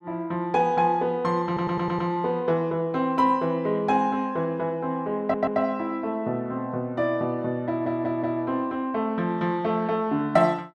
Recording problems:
stutter; at 1.5 s, at 5 s and at 7.5 s

